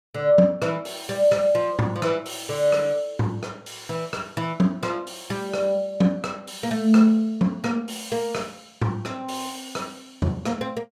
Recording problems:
none

